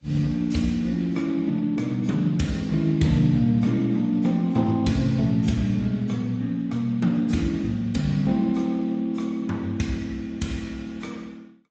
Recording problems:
lossy compression; Speex, then AAC, log-spectral distance 3 dB, nothing above 7.6 kHz

